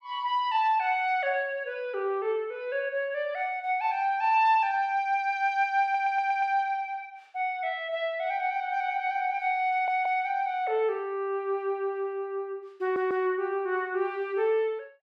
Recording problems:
audio stuttering; at 6 s, at 9.5 s and at 13 s

